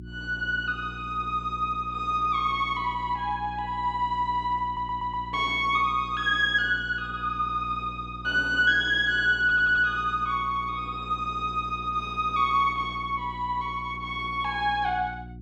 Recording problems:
hum; 60 Hz, harmonics up to 360 Hz, SNR 16 dB
audio stuttering; at 4.5 s and at 9.5 s

